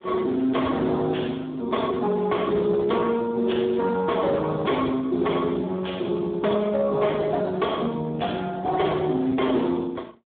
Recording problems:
phone line; 170 Hz to 2 kHz, Speex
distorted audio; hard clipping, signal-to-distortion ratio 12 dB

